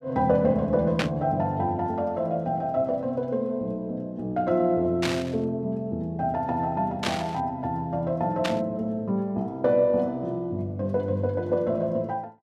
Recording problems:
burst of static; 4 times, first at 1 s; peak +3 dB vs average level

